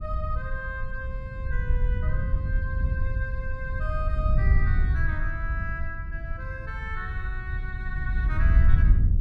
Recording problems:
wind on the microphone; below 80 Hz, SNR -9 dB

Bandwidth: 14 kHz